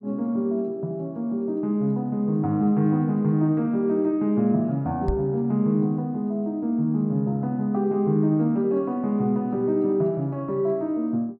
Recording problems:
microphone bump; at 5 s; peak +2 dB vs average level

